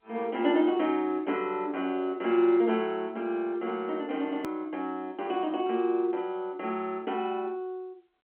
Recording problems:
phone line; 260 Hz to 3.3 kHz, G.711
click at an edit; at 4.5 s

